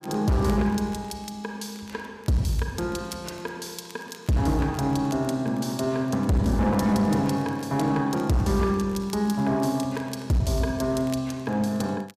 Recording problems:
distorted audio; hard clipping, uneven, signal-to-distortion ratio 11 dB
crackle; vinyl, SNR 27 dB

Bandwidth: 14.5 kHz